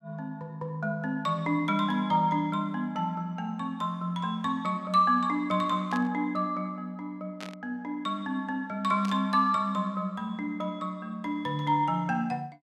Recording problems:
burst of static; at 6 s, at 7.5 s and at 9 s; peak -8 dB vs average level

